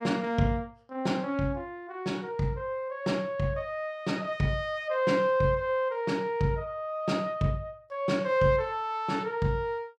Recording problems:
none

